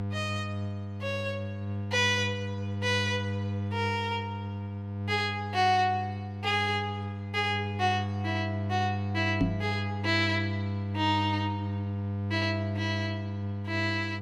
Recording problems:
electrical hum; 50 Hz, harmonics up to 700 Hz, SNR 4 dB
knock on the microphone; at 9.5 s; peak +7 dB vs average level

